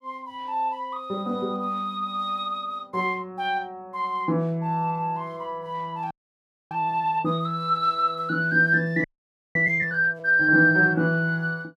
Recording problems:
frozen audio; at 6 s for 0.5 s and at 9 s for 0.5 s

